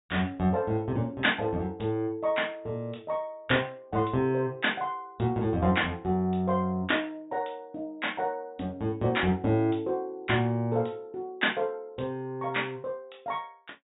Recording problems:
treble missing; nothing above 4 kHz

